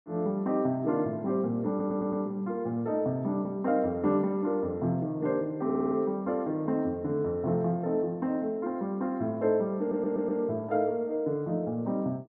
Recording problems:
audio stuttering; at 1.5 s, at 5.5 s and at 10 s

